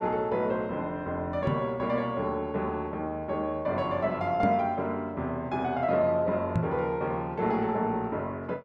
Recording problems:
microphone bump; at 1.5 s, at 4.5 s and at 6.5 s; peak +5 dB vs average level

